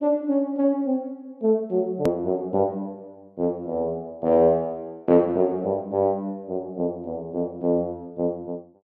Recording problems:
edit click; at 2 s

